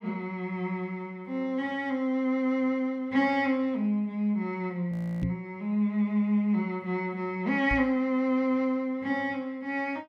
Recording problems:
frozen audio; at 5 s
knock on the microphone; at 5 s and at 7.5 s; peak 0 dB vs average level

